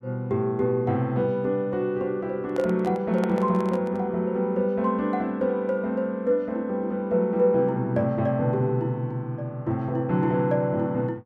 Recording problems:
microphone handling noise; from 2.5 to 4 s; peak -4 dB vs average level

